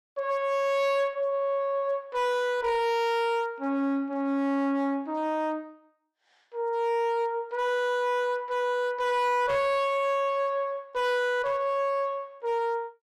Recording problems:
distorted audio; hard clipping, signal-to-distortion ratio 10 dB

